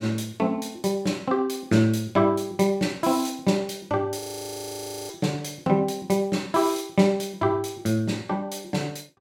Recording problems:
audio freezing; at 4 s for 1 s

